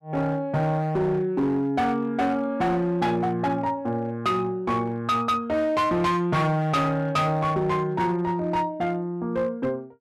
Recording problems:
distorted audio; hard clipping, signal-to-distortion ratio 10 dB

